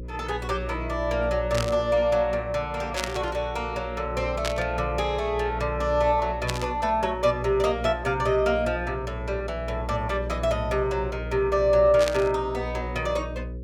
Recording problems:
hum; 60 Hz, harmonics up to 540 Hz, SNR 10 dB
burst of static; 5 times, first at 1.5 s; peak +1 dB vs average level

